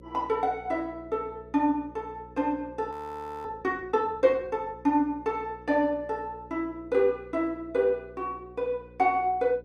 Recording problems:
hum; 60 Hz, harmonics up to 540 Hz, SNR 22 dB
audio freezing; at 3 s for 0.5 s

